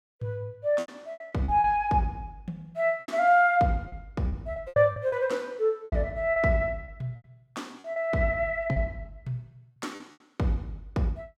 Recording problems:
lost packets; 9% of the sound replaced, filled with repeated pitch periods

